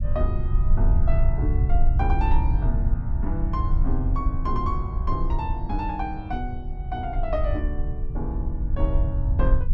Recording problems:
rumble; below 68 Hz, SNR -5 dB

